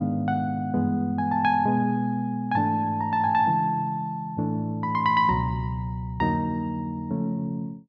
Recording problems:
none

